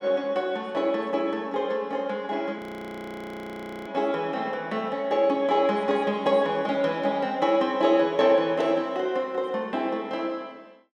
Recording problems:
frozen audio; at 2.5 s for 1.5 s

